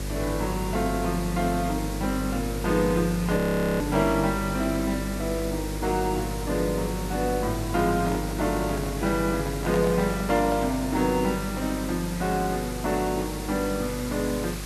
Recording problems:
hum; 50 Hz, harmonics up to 600 Hz, SNR 8 dB
hiss; slope -1 dB per octave, SNR 12 dB
frozen audio; at 3.5 s
microphone handling noise; from 8 to 11 s; peak -3 dB vs average level

